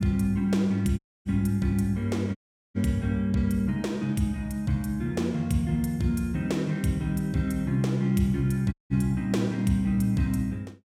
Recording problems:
dropout; at 1 s, at 2.5 s and at 8.5 s

